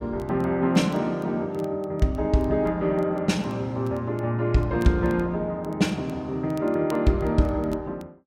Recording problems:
crackling; vinyl, SNR 30 dB

